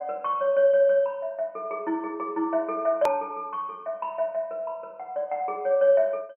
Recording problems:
treble missing; nothing above 3.1 kHz
click at an edit; at 3 s

